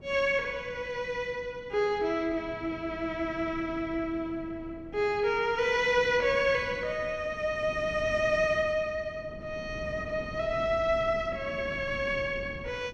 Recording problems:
wind on the microphone; below 300 Hz, SNR 16 dB

